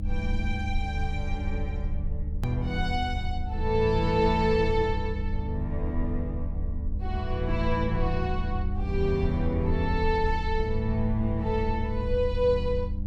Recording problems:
hum; 50 Hz, harmonics up to 600 Hz, SNR 10 dB
rumble; below 74 Hz, strongest tone 24 Hz, SNR 4 dB
click at an edit; at 2.5 s

